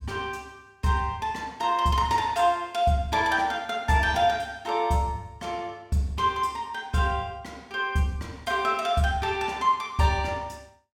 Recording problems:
none

